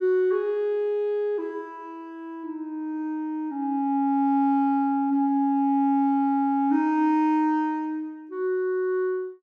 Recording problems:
none

